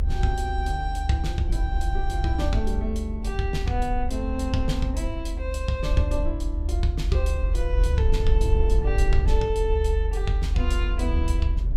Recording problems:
rumble; below 70 Hz, SNR -3 dB

